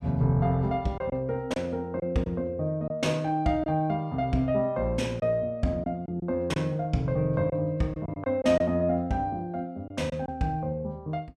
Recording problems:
packet loss; 4% of the sound replaced, filled with silence

